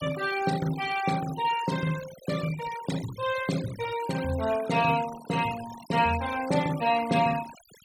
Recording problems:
noise reduction artefacts; signal-to-artefact ratio 14 dB

